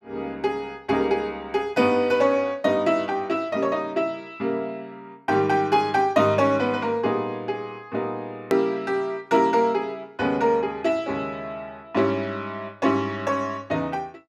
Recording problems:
click at an edit; at 8.5 s

